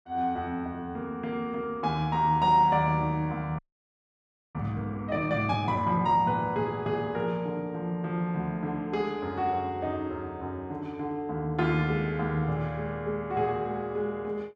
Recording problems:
frozen audio; at 3.5 s for 1 s

